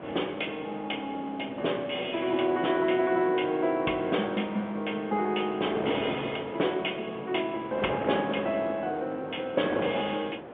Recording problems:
phone line; 240 Hz to 3.5 kHz, G.711
wind noise; below 780 Hz, SNR 9 dB

